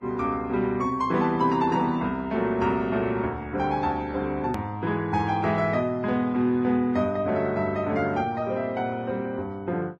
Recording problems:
lossy compression; Vorbis, log-spectral distance 2 dB, nothing above 13.1 kHz
hard cut with a click; at 4.5 s

